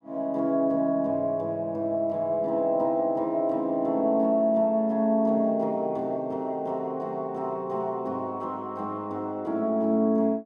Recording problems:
none

